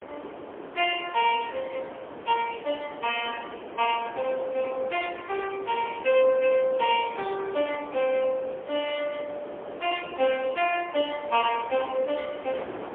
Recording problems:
telephone audio; 320 Hz to 3.4 kHz, AMR-NB, then MP3
wind on the microphone; below 860 Hz, SNR 13 dB

